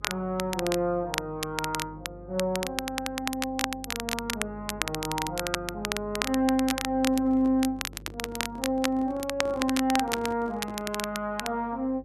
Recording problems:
hum; 50 Hz, harmonics up to 550 Hz, SNR 18 dB
crackling; vinyl, SNR 4 dB
microphone handling noise; from 7 to 11 s; peak -9 dB vs average level

